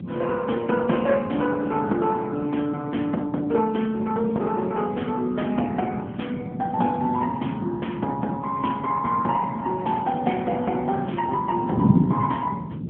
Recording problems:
phone line; 170 Hz to 3.3 kHz, AMR-NB
wind noise; below 270 Hz, SNR 6 dB

